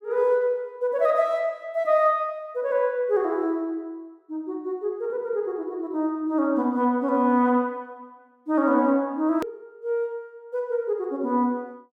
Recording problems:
click at an edit; at 9.5 s

